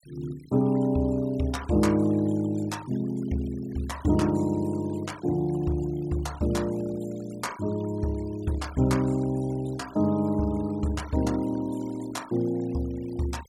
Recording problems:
denoising artefacts; signal-to-artefact ratio 21 dB

